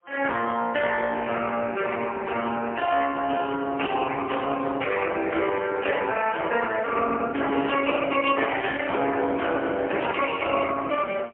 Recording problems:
telephone audio; 240 Hz to 3.2 kHz, AMR-NB, then MP3
microphone handling noise; from 3 to 6.5 s; peak -7 dB vs average level

